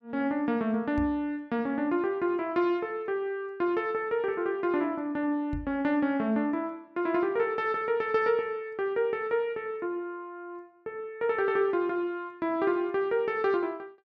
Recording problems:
knock on the microphone; at 1 s and at 5.5 s; peak -4 dB vs average level

